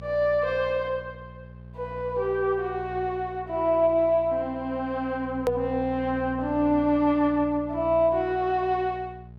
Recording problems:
hum; 60 Hz, harmonics up to 660 Hz, SNR 17 dB
hard cut with a click; at 5.5 s

